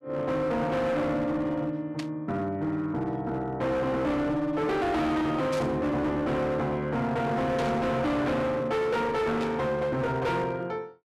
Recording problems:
distortion; hard clipping, signal-to-distortion ratio 8 dB
static burst; 4 times, first at 2 s; peak -6 dB vs average level

